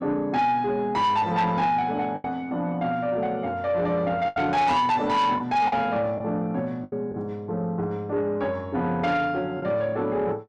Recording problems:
distortion; soft clipping, signal-to-distortion ratio 11 dB
lost packets; 3% of the sound replaced, filled with the last packet

